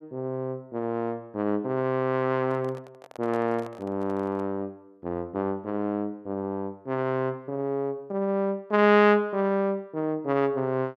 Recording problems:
handling noise; from 2.5 to 4.5 s; peak -11 dB vs average level

